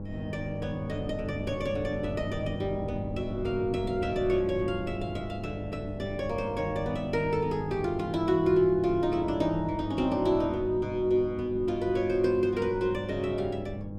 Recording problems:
hum; 50 Hz, harmonics up to 800 Hz, SNR 10 dB
wind noise; below 240 Hz, SNR 12 dB

